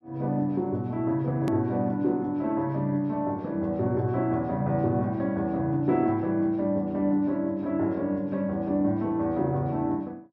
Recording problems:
edit click; at 1.5 s

